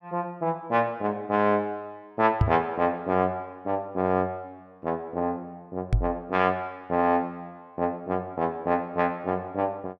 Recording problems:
knock on the microphone; at 2.5 s and at 6 s; peak +8 dB vs average level

